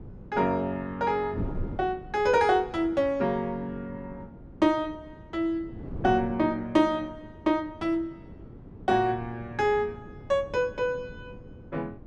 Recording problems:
wind noise; below 280 Hz, SNR 16 dB

